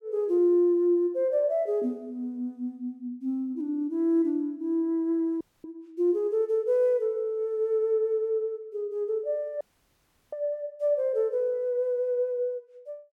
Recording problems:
audio cutting out; at 5.5 s and at 9.5 s for 0.5 s

